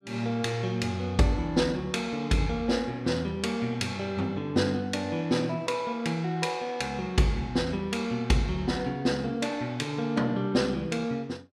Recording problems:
none

